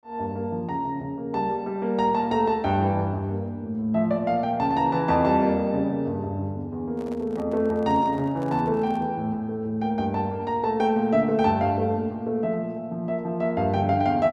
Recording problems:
microphone handling noise; from 7 to 9 s; peak -13 dB vs average level

